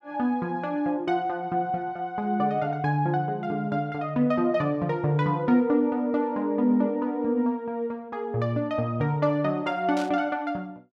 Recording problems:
burst of static; at 10 s; peak -9 dB vs average level

